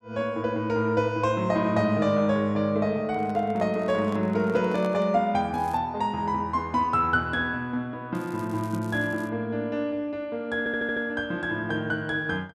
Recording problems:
microphone handling noise; from 3 to 5 s; peak -8 dB vs average level
crackling; at 5.5 s and from 8 to 9.5 s; loose cable, SNR 26 dB
stutter; at 11 s

